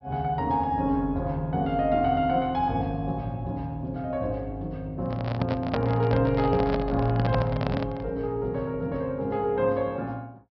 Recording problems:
low-pass filter; nothing above 5.5 kHz
handling noise; from 5 to 8 s; peak +3 dB vs average level

